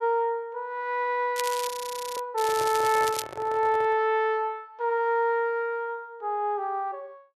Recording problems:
crackling; at 1.5 s and at 2.5 s; loose cable, SNR 9 dB
frozen audio; at 1.5 s
microphone handling noise; from 2.5 to 4 s; peak -8 dB vs average level

